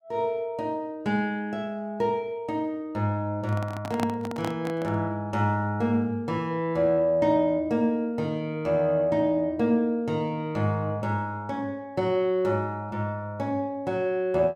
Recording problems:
microphone handling noise; from 3.5 to 5 s; peak 0 dB vs average level

